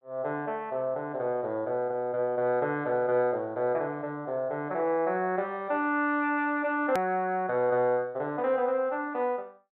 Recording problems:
treble cut off; nothing above 4 kHz
edit click; at 7 s

